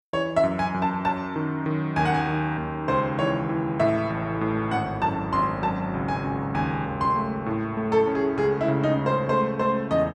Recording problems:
none

